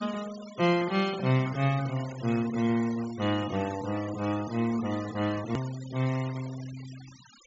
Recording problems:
treble missing; nothing above 7.5 kHz
noise reduction artefacts; signal-to-artefact ratio 16 dB
click at an edit; at 5.5 s

